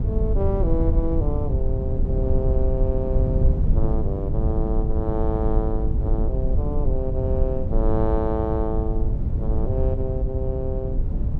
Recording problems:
rumble; below 92 Hz, SNR -4 dB

